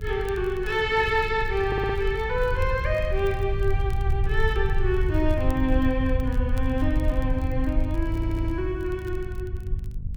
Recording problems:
hum; 50 Hz, harmonics up to 500 Hz, SNR 17 dB
low-frequency rumble; below 80 Hz, SNR 2 dB
crackling; vinyl, SNR 27 dB
audio stuttering; at 1.5 s and at 8 s

